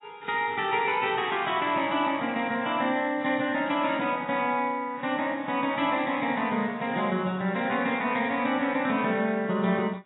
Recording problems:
lossy compression; AAC, log-spectral distance 3 dB, nothing above 3.7 kHz

